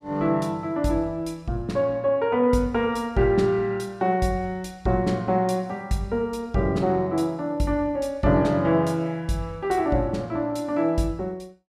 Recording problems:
none

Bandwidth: 15 kHz